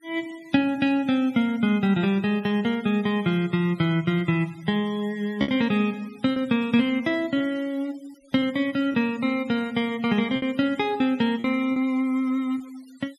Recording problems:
denoising artefacts; signal-to-artefact ratio 25 dB
lost packets; 3% of the sound replaced, filled with repeated pitch periods

